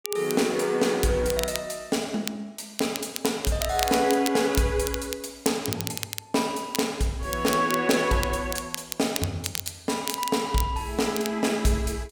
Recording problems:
crackle; vinyl, SNR 8 dB

